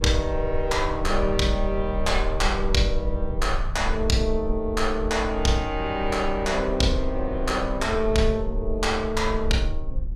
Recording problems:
low-frequency rumble; below 52 Hz, SNR 7 dB

